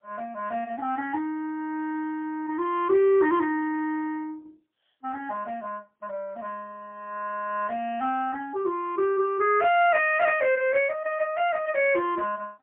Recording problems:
telephone audio; 280 Hz to 3.5 kHz, AMR-NB, then MP3

